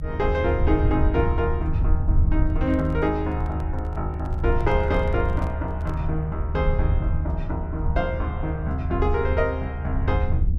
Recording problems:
low-frequency rumble; below 80 Hz, SNR -1 dB
handling noise; from 2.5 to 6 s; peak -9 dB vs average level

